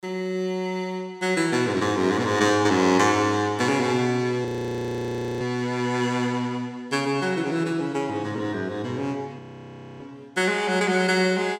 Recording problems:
frozen audio; at 4.5 s for 1 s and at 9.5 s for 0.5 s

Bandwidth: 17.5 kHz